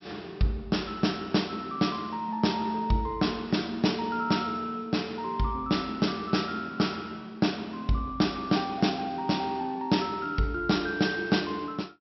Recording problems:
treble missing; nothing above 5.7 kHz

